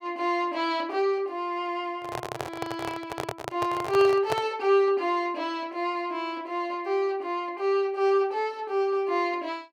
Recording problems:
handling noise; from 2 to 4.5 s; peak +2 dB vs average level

